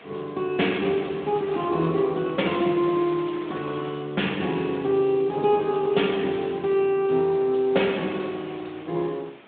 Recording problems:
telephone audio; 150 Hz to 3.7 kHz, Speex
wind on the microphone; below 2.5 kHz, SNR 20 dB

